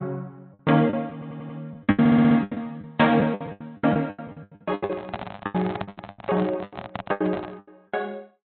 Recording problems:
treble missing; nothing above 3.8 kHz
lossy codec; MP3, log-spectral distance 2 dB
lost packets; 22% of the sound replaced, filled with the last packet
stutter; at 1 s and at 2 s
handling noise; from 4.5 to 7.5 s; peak -3 dB vs average level

